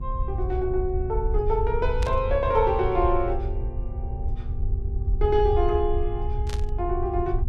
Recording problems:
electrical hum; 60 Hz, harmonics up to 840 Hz, SNR 17 dB
rumble; below 72 Hz, SNR 4 dB
burst of static; at 2 s and at 6.5 s; peak -7 dB vs average level

